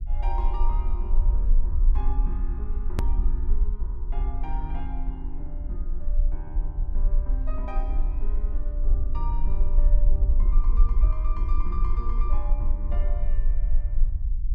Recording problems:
rumble; below 42 Hz, strongest tone 22 Hz, SNR -13 dB
click at an edit; at 3 s

